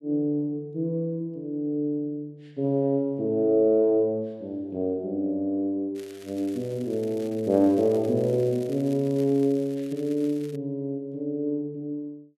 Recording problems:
crackling; from 6 to 11 s; loose cable, SNR 24 dB

